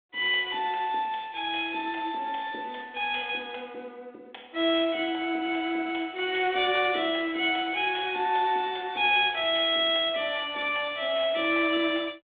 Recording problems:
phone line; 340 Hz to 3.5 kHz, G.726

